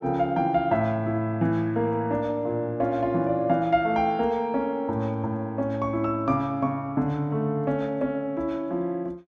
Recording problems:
none

